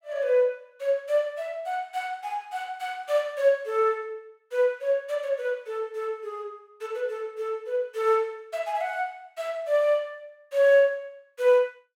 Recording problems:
none

